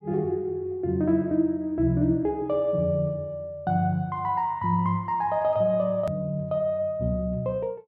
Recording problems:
hard cut with a click; at 6 s

